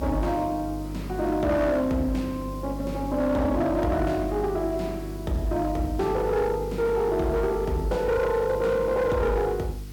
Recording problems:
distorted audio; hard clipping, signal-to-distortion ratio 11 dB
hum; 50 Hz, harmonics up to 500 Hz, SNR 11 dB
hiss; SNR 24 dB

